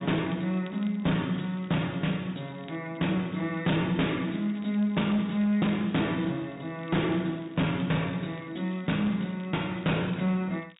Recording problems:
low-pass filter; nothing above 4 kHz
distortion; hard clipping, uneven, signal-to-distortion ratio 7 dB
crackling; vinyl, SNR 27 dB

